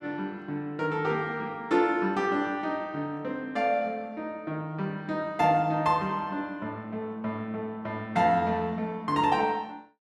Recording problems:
none

